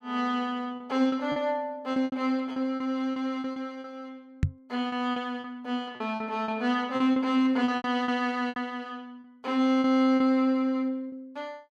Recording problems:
packet loss; 11% of the sound replaced, filled with repeated pitch periods
microphone bump; at 4.5 s; peak +6 dB vs average level

